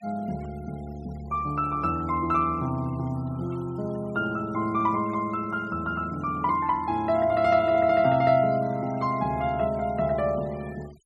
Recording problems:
noise reduction artefacts; signal-to-artefact ratio 25 dB

